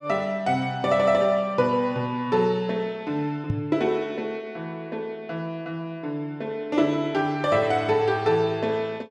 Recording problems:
microphone bump; at 3.5 s; peak +3 dB vs average level

